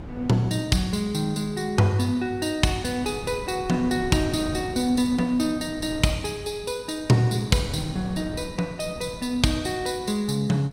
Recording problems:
wind noise; below 320 Hz, SNR 14 dB

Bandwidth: 16 kHz